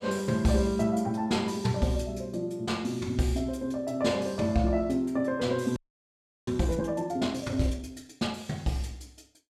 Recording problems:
audio freezing; at 6 s for 0.5 s

